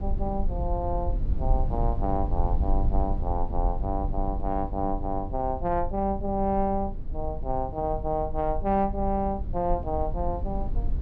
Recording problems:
rumble; below 62 Hz, SNR 3 dB

